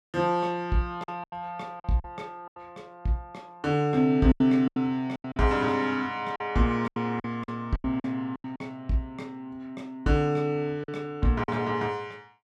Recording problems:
packet loss; 9% of the sound replaced, filled with silence

